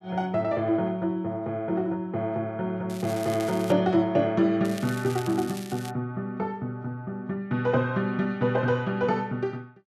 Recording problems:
crackle; at 3 s and from 4.5 to 6 s; loose cable, SNR 16 dB

